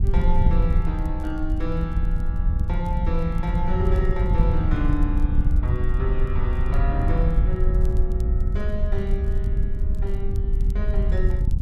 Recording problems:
wind on the microphone; below 70 Hz, SNR -6 dB
crackle; vinyl, SNR 30 dB

